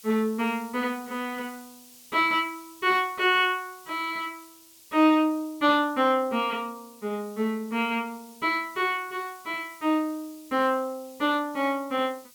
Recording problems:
background hiss; SNR 23 dB

